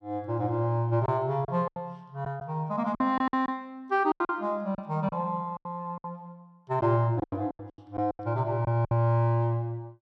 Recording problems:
lost packets; 11% of the sound replaced, filled with silence

